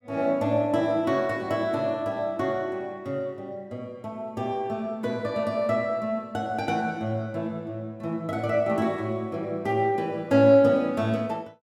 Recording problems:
none

